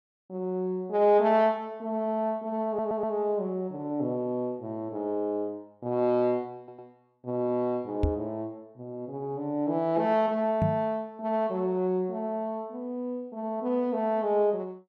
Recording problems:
audio stuttering; at 2.5 s and at 6.5 s
microphone thump; at 8 s and at 11 s; peak +5 dB vs average level

